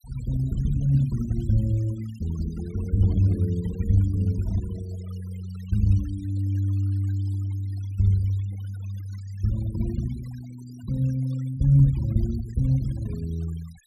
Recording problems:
denoising artefacts; signal-to-artefact ratio 25 dB

